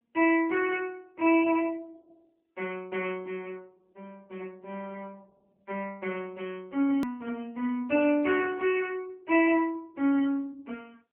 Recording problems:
phone line; 220 Hz to 3.1 kHz, AMR-NB
click at an edit; at 7 s

